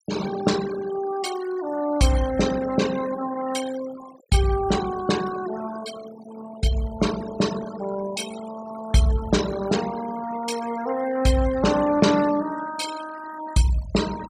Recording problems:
noise reduction artefacts; signal-to-artefact ratio 12 dB

